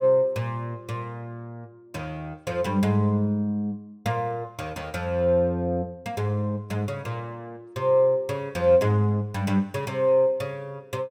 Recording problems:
none

